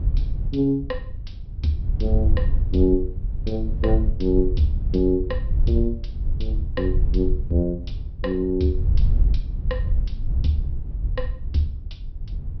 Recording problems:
treble cut off; nothing above 5.5 kHz
wind on the microphone; below 70 Hz, SNR 1 dB

